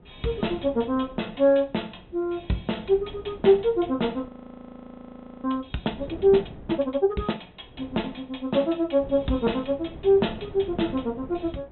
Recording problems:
low-pass filter; nothing above 4 kHz
wind on the microphone; below 370 Hz, SNR 19 dB
audio freezing; at 4.5 s for 1 s

